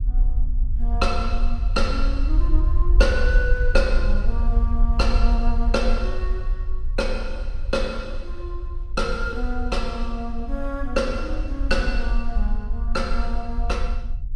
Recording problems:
rumble; below 48 Hz, SNR -2 dB

